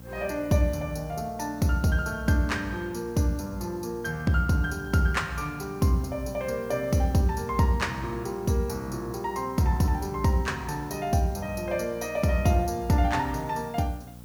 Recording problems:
hum; 60 Hz, harmonics up to 1.1 kHz, SNR 18 dB
hiss; SNR 27 dB

